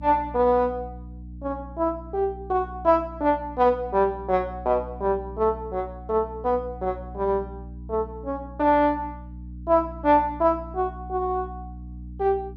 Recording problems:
mains hum; 60 Hz, harmonics up to 300 Hz, SNR 15 dB

